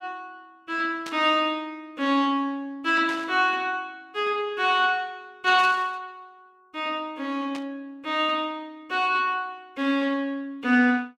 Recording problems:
burst of static; 4 times, first at 1 s; peak -9 dB vs average level

